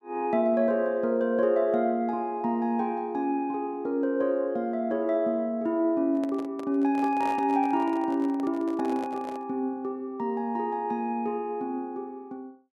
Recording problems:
microphone handling noise; from 6 to 9.5 s; peak -8 dB vs average level

